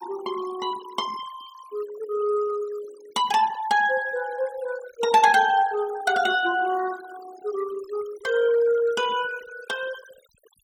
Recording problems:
denoising artefacts; signal-to-artefact ratio 18 dB

